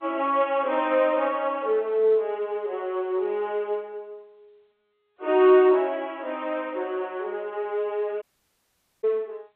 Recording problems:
phone line; 320 Hz to 3.4 kHz, G.711
audio cutting out; at 8 s for 1 s

